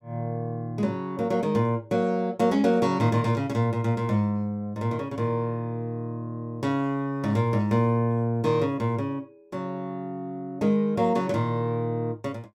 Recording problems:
none

